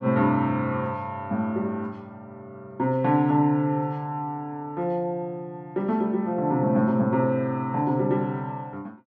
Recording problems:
none

